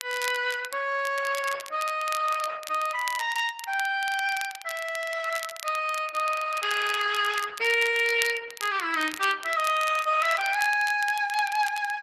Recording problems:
codec artefacts; Opus, log-spectral distance 4 dB, nothing above 12 kHz
crackle; vinyl, SNR 13 dB

